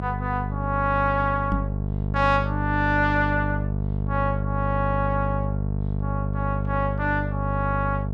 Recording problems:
hum; 50 Hz, harmonics up to 700 Hz, SNR 2 dB
knock on the microphone; at 1.5 s; peak +1 dB vs average level

